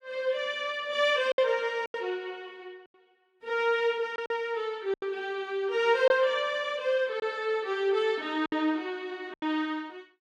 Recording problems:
packet loss; 5% of the sound replaced, filled with silence

